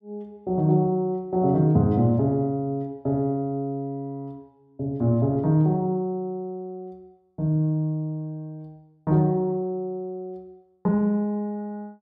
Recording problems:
none

